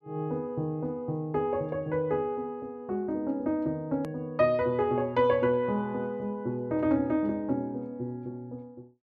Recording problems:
click at an edit; at 4 s

